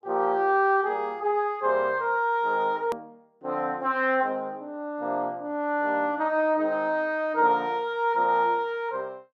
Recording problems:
click at an edit; at 3 s

